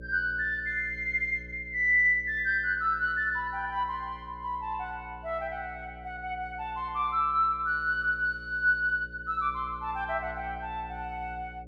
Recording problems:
electrical hum; 60 Hz, harmonics up to 600 Hz, SNR 19 dB

